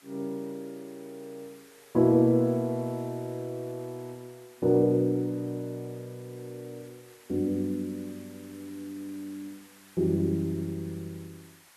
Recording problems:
background hiss; SNR 25 dB

